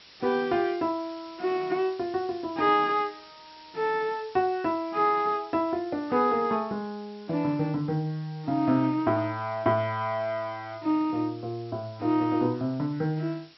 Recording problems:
treble missing; nothing above 5.5 kHz
background hiss; slope +1 dB per octave, SNR 24 dB

